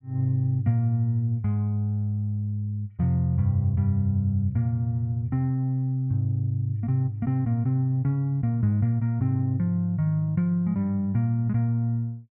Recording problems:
none

